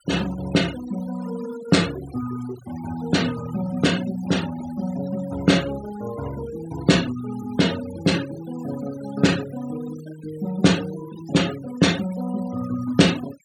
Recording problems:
denoising artefacts; signal-to-artefact ratio 15 dB

